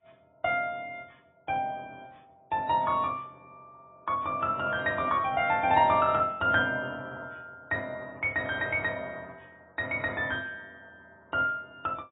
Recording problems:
lossy compression; AAC, log-spectral distance 2 dB, nothing above 3.2 kHz

